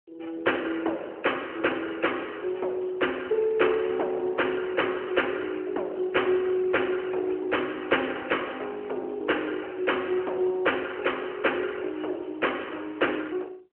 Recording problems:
phone line; 300 Hz to 3.1 kHz, AMR-NB

